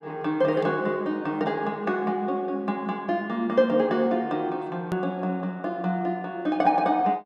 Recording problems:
edit click; at 5 s

